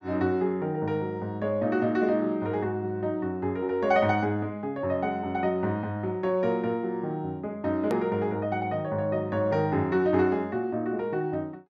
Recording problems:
treble cut off; nothing above 8 kHz
edit click; at 8 s

